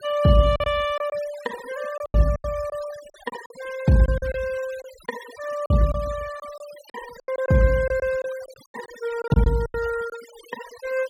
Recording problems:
noise reduction artefacts; signal-to-artefact ratio 18 dB
packet loss; 10% of the sound replaced, filled with silence

